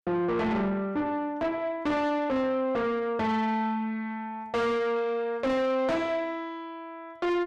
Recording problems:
distortion; soft clipping, signal-to-distortion ratio 6 dB

